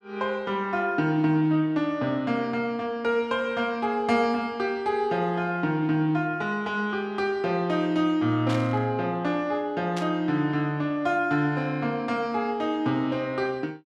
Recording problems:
static burst; at 8.5 s and at 10 s; peak -6 dB vs average level

